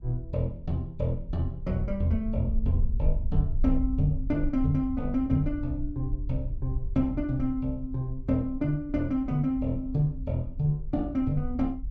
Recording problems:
low-frequency rumble; below 58 Hz, SNR 7 dB

